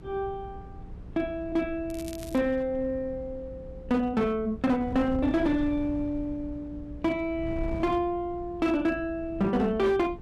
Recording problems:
distorted audio; hard clipping, uneven, signal-to-distortion ratio 12 dB
mains hum; 60 Hz, harmonics up to 480 Hz, SNR 20 dB
wind on the microphone; below 140 Hz, SNR 15 dB
crackle; at 2 s; loose cable, SNR 19 dB

